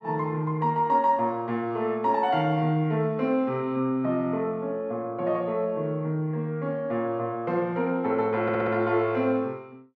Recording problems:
audio stuttering; at 8.5 s

